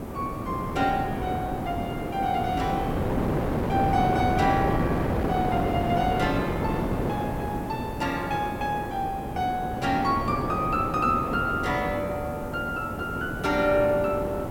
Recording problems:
electrical hum; 60 Hz, harmonics up to 1.3 kHz, SNR 20 dB
background hiss; slope +5 dB per octave, SNR 25 dB
wind noise; below 590 Hz, SNR 2 dB

